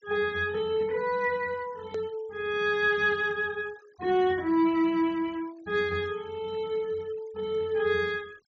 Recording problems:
treble cut off; nothing above 8 kHz
denoising artefacts; signal-to-artefact ratio 26 dB
click at an edit; at 2 s

